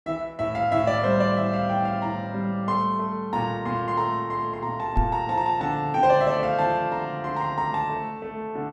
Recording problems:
microphone thump; at 5 s; peak +3 dB vs average level

